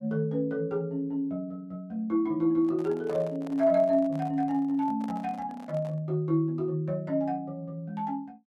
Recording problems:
handling noise; from 2.5 to 6 s; peak -11 dB vs average level

